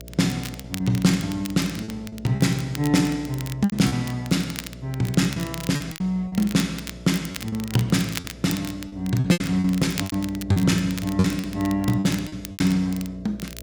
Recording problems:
hum; 60 Hz, harmonics up to 660 Hz, SNR 18 dB
crackling; vinyl, SNR 14 dB
lost packets; 9% of the sound replaced, filled with repeated pitch periods

